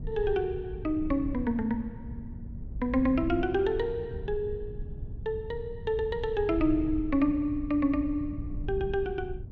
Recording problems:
wind noise; below 110 Hz, SNR 10 dB

